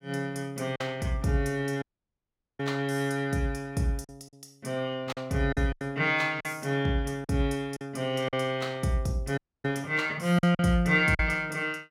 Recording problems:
lost packets; 5% of the sound replaced, filled with silence
audio cutting out; at 2 s for 1 s and at 9.5 s

